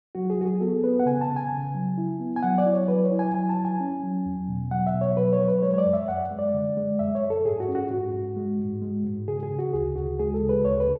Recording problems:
none

